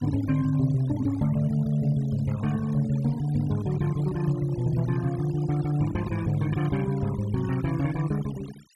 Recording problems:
noise reduction artefacts; signal-to-artefact ratio 18 dB

